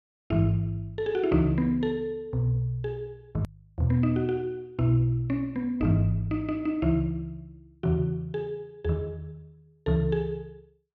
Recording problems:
edit click; at 3.5 s

